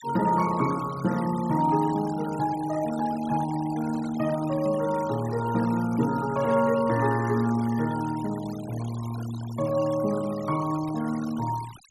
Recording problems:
noise reduction artefacts; signal-to-artefact ratio 16 dB

